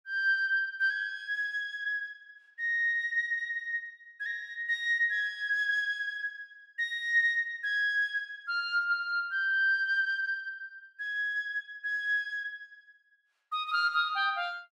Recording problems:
none

